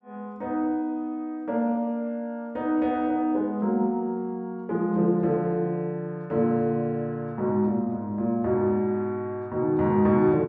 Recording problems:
none

